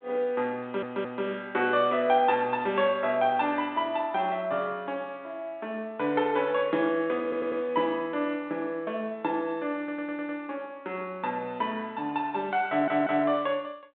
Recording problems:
phone line; 170 Hz to 3.8 kHz, G.726
stutter; 4 times, first at 0.5 s

